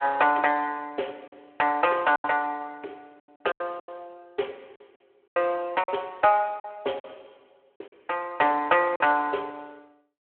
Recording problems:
phone line; 300 Hz to 3.3 kHz, Speex
packet loss; 8% of the sound replaced, filled with silence

